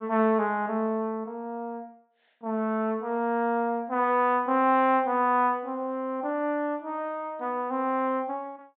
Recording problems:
treble missing; nothing above 4 kHz

